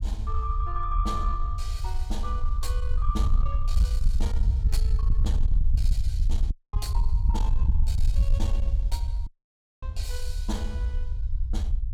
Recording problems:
distortion; soft clipping, signal-to-distortion ratio 12 dB
rumble; below 64 Hz, SNR -9 dB
audio cutting out; at 6.5 s and at 9.5 s for 0.5 s

